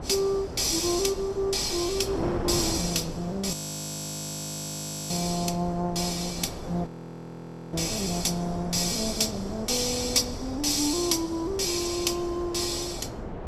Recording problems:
wind noise; below 620 Hz, SNR 9 dB
frozen audio; at 3.5 s for 1.5 s and at 7 s for 1 s

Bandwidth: 14.5 kHz